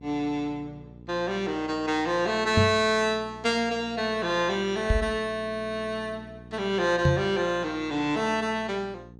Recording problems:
hum; 60 Hz, harmonics up to 840 Hz, SNR 20 dB
microphone bump; at 2.5 s, at 5 s and at 7 s; peak +7 dB vs average level

